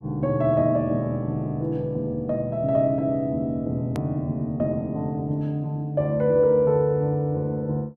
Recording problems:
click at an edit; at 4 s

